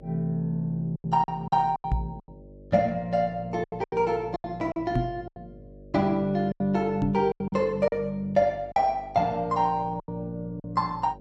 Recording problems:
electrical hum; 50 Hz, harmonics up to 600 Hz, SNR 21 dB
packet loss; 10% of the sound replaced, filled with silence
knock on the microphone; at 2 s, at 5 s and at 7 s; peak +3 dB vs average level

